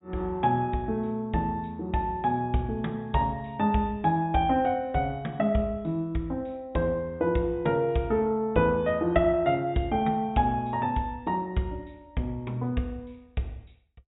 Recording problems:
treble missing; nothing above 4 kHz

